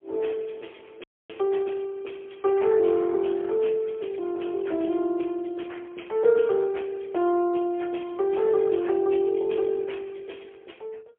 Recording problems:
telephone audio; 240 Hz to 3.4 kHz, AMR-NB, then MP3
dropout; at 1 s

